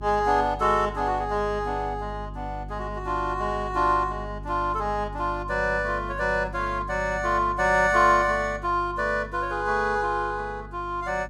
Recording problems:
hum; 50 Hz, harmonics up to 400 Hz, SNR 14 dB

